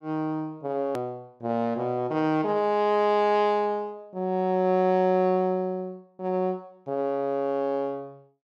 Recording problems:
hard cut with a click; at 1 s

